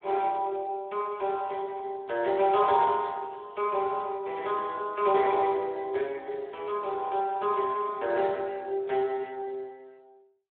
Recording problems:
phone line; 300 Hz to 3.7 kHz, Speex

